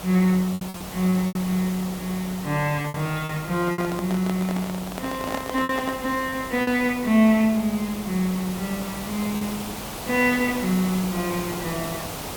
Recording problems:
hum; 50 Hz, harmonics up to 600 Hz, SNR 22 dB
hiss; SNR 10 dB
lost packets; 5% of the sound replaced, filled with repeated pitch periods
handling noise; from 3.5 to 6 s; peak -2 dB vs average level

